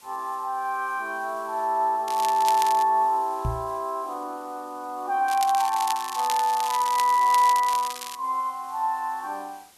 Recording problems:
background hiss; slope 0 dB per octave, SNR 27 dB
crackling; at 2 s and from 5.5 to 8 s; loose cable, SNR 11 dB
microphone bump; at 3.5 s; peak -1 dB vs average level

